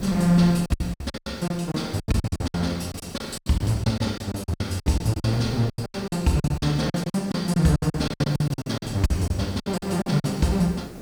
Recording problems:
background hiss; SNR 16 dB
wind noise; below 200 Hz, SNR 19 dB
lost packets; 20% of the sound replaced, filled with silence

